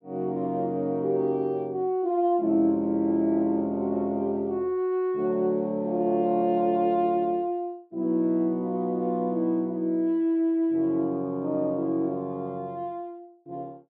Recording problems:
none

